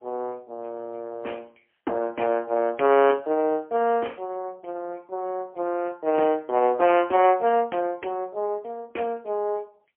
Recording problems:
phone line; 280 Hz to 3.1 kHz, AMR-NB, then MP3

